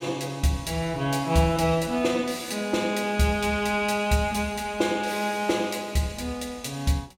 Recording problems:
none

